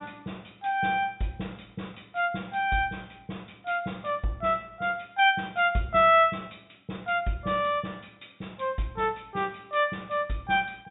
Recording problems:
low-pass filter; nothing above 4 kHz

